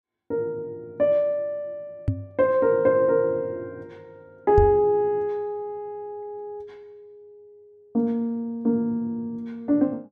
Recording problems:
knock on the microphone; at 2 s and at 4.5 s; peak +5 dB vs average level

